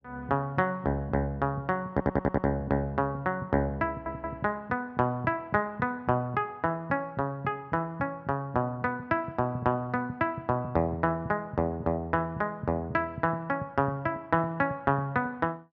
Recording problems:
audio stuttering; at 2 s and at 4 s

